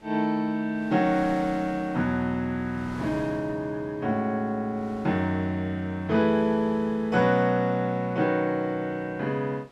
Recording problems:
wind noise; below 1.6 kHz, SNR 22 dB

